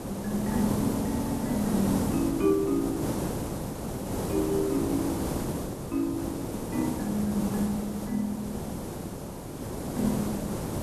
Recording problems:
hiss; SNR 2 dB

